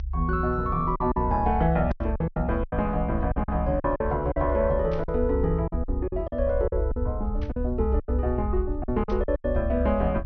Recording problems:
low-pass filter; nothing above 6 kHz
low-frequency rumble; below 68 Hz, SNR 4 dB
lost packets; 11% of the sound replaced, filled with silence
static burst; 4 times, first at 2 s; peak -14 dB vs average level

